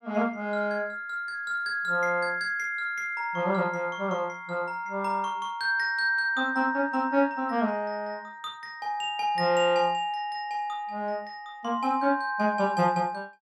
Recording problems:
none

